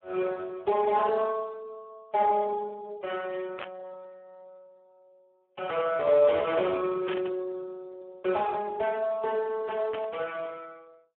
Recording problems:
phone line; 320 Hz to 2.9 kHz, Speex
static burst; at 3.5 s, at 7 s and at 10 s; peak -5 dB vs average level

